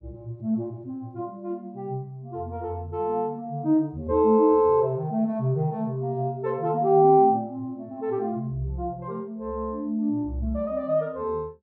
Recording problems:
none

